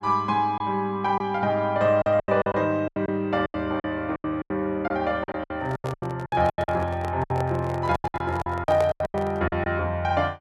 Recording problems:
lost packets; 15% of the sound replaced, filled with silence
handling noise; from 5.5 to 9.5 s; peak -3 dB vs average level

